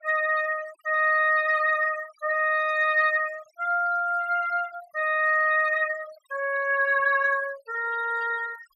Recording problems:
denoising artefacts; signal-to-artefact ratio 21 dB

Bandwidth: 14.5 kHz